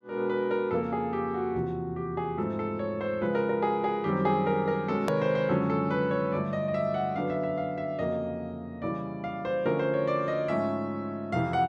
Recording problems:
edit click; at 5 s

